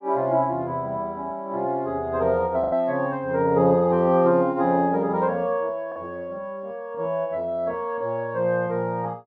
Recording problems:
lost packets; 1.3% of the sound replaced, filled with the last packet

